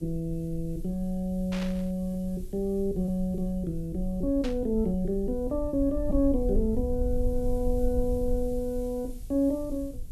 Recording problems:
background hiss; slope +4 dB per octave, SNR 27 dB
rumble; below 56 Hz, SNR 8 dB
lost packets; 1.4% of the sound replaced, filled with repeated pitch periods
static burst; at 1.5 s and at 4.5 s; peak -7 dB vs average level

